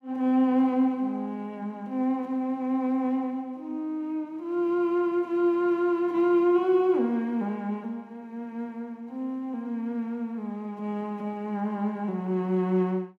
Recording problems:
none

